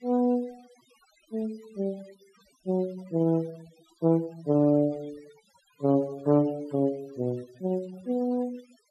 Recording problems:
denoising artefacts; signal-to-artefact ratio 26 dB

